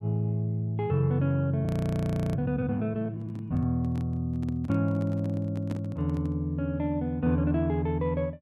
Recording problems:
audio freezing; at 1.5 s for 0.5 s
handling noise; from 3 to 6.5 s; peak -6 dB vs average level

